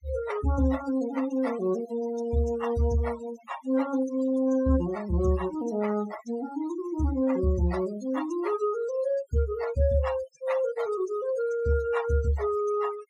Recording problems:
noise reduction artefacts; signal-to-artefact ratio 13 dB

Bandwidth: 16.5 kHz